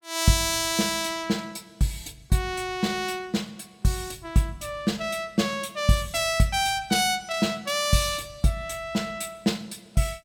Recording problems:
none

